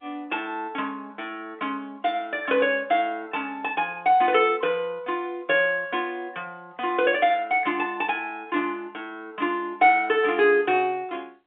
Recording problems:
phone line; 240 Hz to 3.7 kHz, G.711

